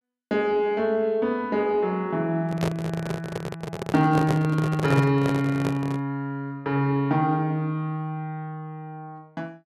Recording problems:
handling noise; from 2.5 to 6 s; peak +2 dB vs average level

